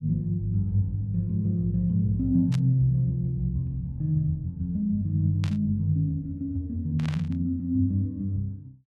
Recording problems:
burst of static; at 2.5 s, at 5.5 s and at 7 s; peak -8 dB vs average level

